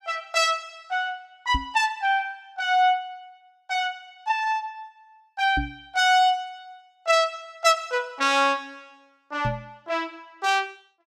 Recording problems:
knock on the microphone; at 1.5 s, at 5.5 s and at 9.5 s; peak -1 dB vs average level

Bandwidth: 14.5 kHz